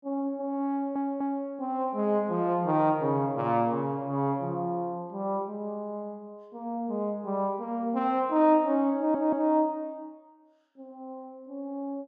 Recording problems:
stutter; at 0.5 s and at 9 s

